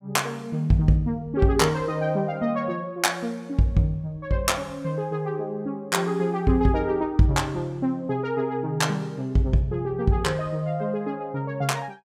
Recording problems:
none

